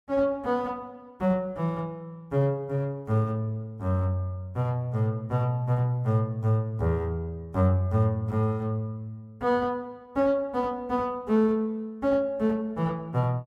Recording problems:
none

